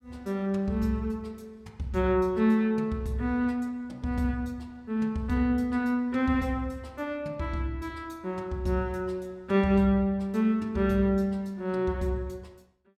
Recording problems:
none

